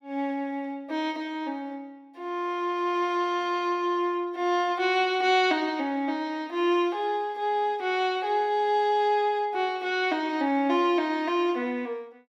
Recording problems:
none

